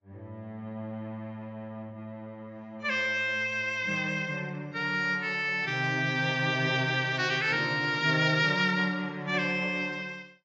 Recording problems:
lossy codec; AAC, log-spectral distance 2 dB

